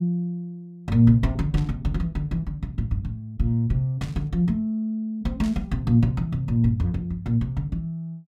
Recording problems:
burst of static; at 1.5 s, at 4 s and at 5.5 s; peak -13 dB vs average level

